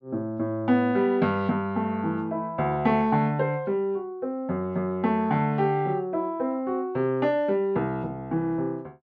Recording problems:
treble cut off; nothing above 7.6 kHz

